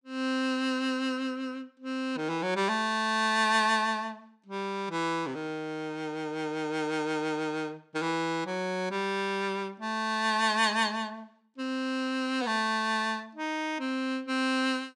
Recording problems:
none

